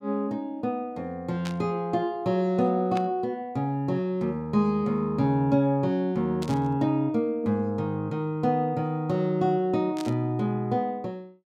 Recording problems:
burst of static; 4 times, first at 1.5 s; peak -7 dB vs average level

